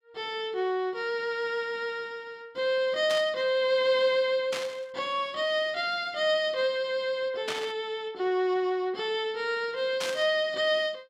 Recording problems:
static burst; 4 times, first at 3 s; peak -1 dB vs average level

